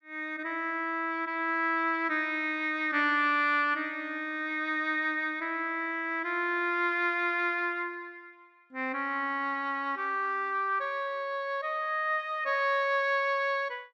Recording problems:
none

